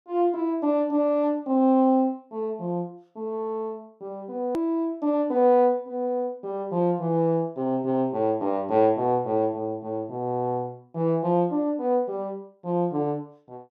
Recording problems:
click at an edit; at 4.5 s

